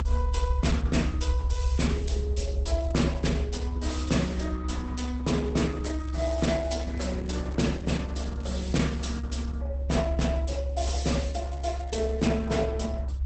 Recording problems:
lossy compression; Opus, log-spectral distance 3 dB, nothing above 8.2 kHz
low-frequency rumble; below 68 Hz, strongest tone 66 Hz, SNR -2 dB
crackling; at 2.5 s, from 5.5 to 9.5 s and from 11 to 13 s; loose cable, SNR 25 dB

